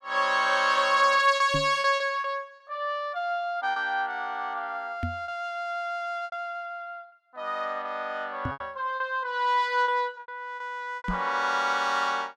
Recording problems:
lost packets; 6% of the sound replaced, filled with repeated pitch periods
microphone thump; 4 times, first at 1.5 s; peak -1 dB vs average level

